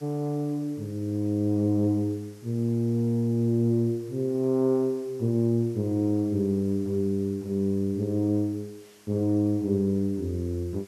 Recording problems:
hiss; slope -1 dB per octave, SNR 28 dB

